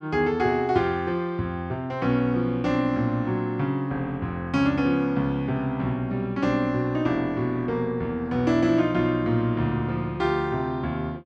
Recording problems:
none

